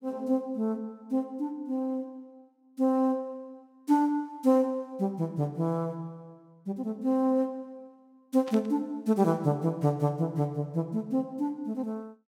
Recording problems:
burst of static; at 8.5 s; peak -10 dB vs average level

